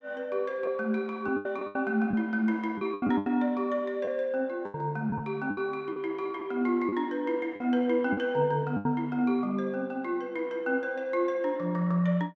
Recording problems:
lost packets; 7% of the sound replaced, filled with the last packet

